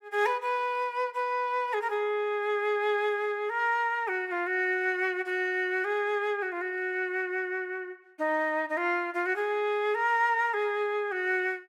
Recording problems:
none

